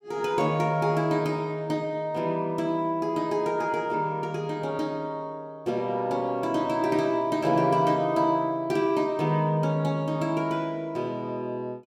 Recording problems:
none

